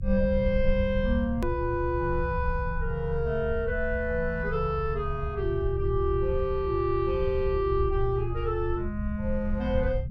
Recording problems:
rumble; below 74 Hz, SNR 5 dB
edit click; at 1.5 s

